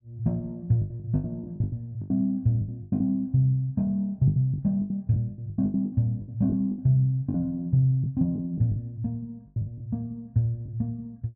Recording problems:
lost packets; 14% of the sound replaced, filled with the last packet

